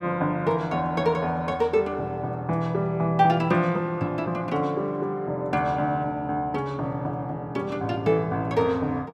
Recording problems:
none

